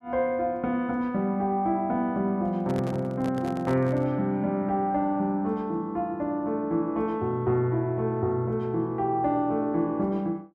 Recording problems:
microphone handling noise; from 2.5 to 4 s; peak -6 dB vs average level

